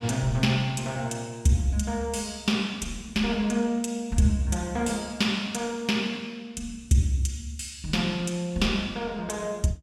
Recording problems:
none

